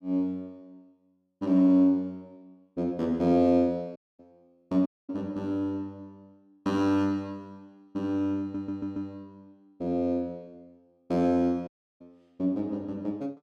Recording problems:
dropout; at 4 s, at 5 s and at 12 s
stutter; at 8.5 s

